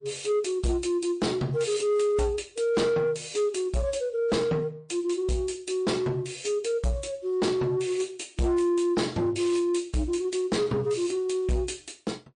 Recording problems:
lossy compression; MP3, log-spectral distance 3 dB, nothing above 9.2 kHz
distorted audio; soft clipping, signal-to-distortion ratio 10 dB

